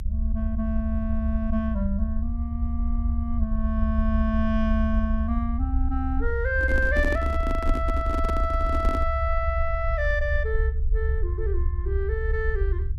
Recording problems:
rumble; below 68 Hz, SNR -1 dB
microphone handling noise; from 6.5 to 9 s; peak +1 dB vs average level

